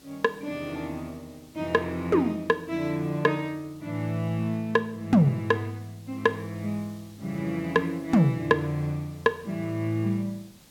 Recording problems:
background hiss; SNR 26 dB

